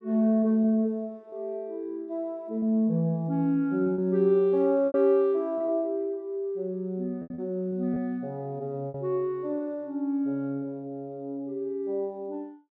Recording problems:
lost packets; 4% of the sound replaced, filled with repeated pitch periods

